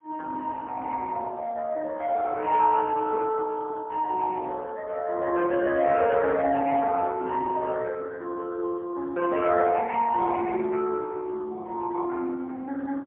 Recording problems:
phone line; 280 Hz to 2.6 kHz, AMR-NB, then MP3

